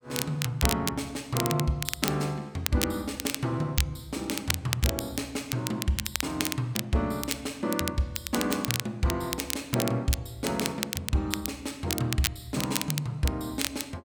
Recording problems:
crackling; vinyl, SNR 3 dB

